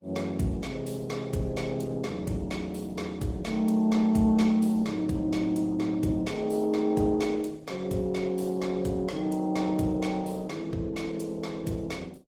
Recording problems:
lossy codec; Opus, then Opus, log-spectral distance 3 dB, nothing above 19 kHz

